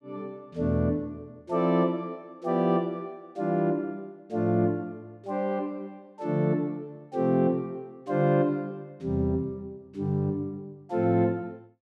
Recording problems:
none

